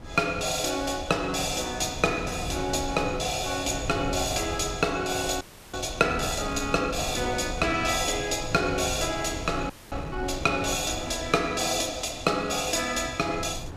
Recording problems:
wind on the microphone; below 290 Hz, SNR 12 dB
audio freezing; at 5.5 s and at 9.5 s

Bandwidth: 14.5 kHz